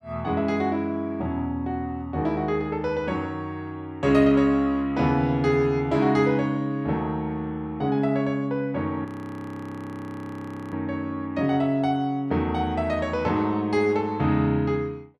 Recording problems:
frozen audio; at 9 s for 1.5 s

